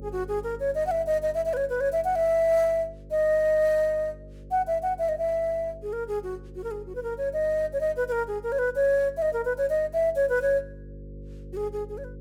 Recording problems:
hum; 50 Hz, harmonics up to 550 Hz, SNR 19 dB

